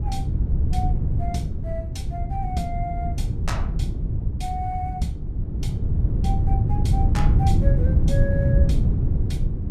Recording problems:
wind on the microphone; below 130 Hz, SNR -9 dB

